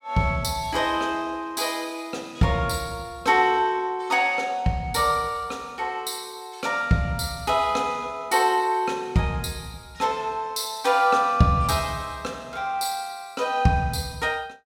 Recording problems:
none

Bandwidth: 16.5 kHz